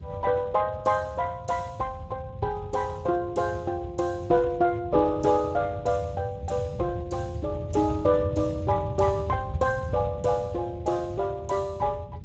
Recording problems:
lossy compression; Speex, log-spectral distance 3 dB, nothing above 7.3 kHz
rumble; below 140 Hz, SNR 10 dB

